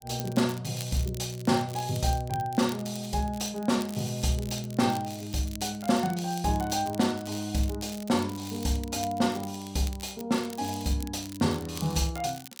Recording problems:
crackle; vinyl, SNR 16 dB

